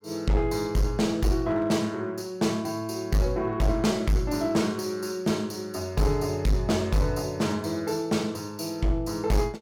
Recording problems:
distorted audio; hard clipping, uneven, signal-to-distortion ratio 10 dB

